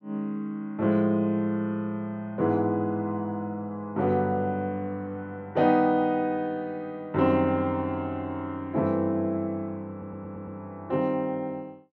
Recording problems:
audio stuttering; at 10 s

